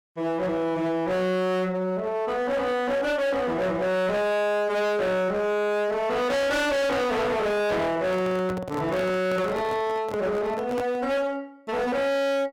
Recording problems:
distorted audio; hard clipping, signal-to-distortion ratio 6 dB
handling noise; from 8 to 11 s; peak -3 dB vs average level

